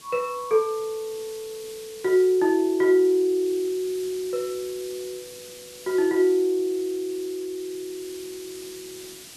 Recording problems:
hiss; SNR 18 dB

